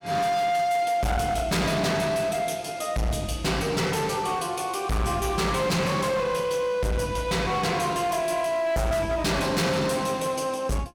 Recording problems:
distortion; hard clipping, signal-to-distortion ratio 7 dB

